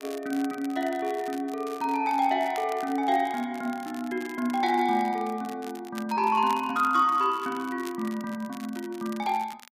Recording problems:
crackling; vinyl, SNR 20 dB

